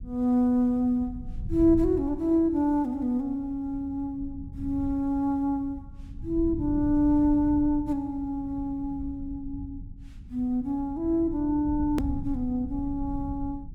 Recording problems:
rumble; below 110 Hz, SNR 13 dB
edit click; at 12 s

